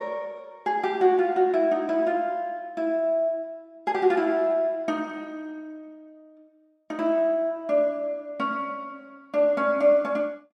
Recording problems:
none

